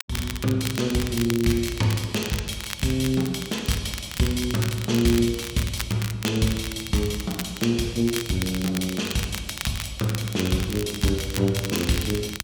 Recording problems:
crackle; vinyl, SNR 9 dB

